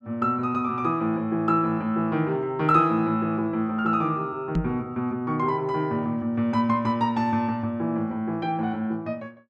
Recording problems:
microphone bump; at 4.5 s; peak +3 dB vs average level

